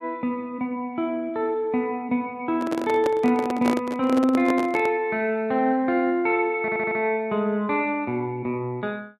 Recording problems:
handling noise; from 2.5 to 5 s; peak +1 dB vs average level
audio stuttering; at 6.5 s

